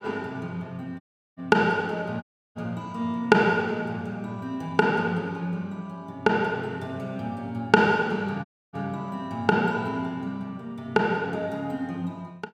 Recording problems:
dropout; at 1 s, at 2 s and at 8.5 s

